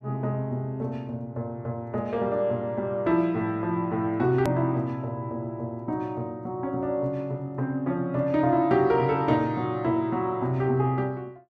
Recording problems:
hard cut with a click; at 4.5 s

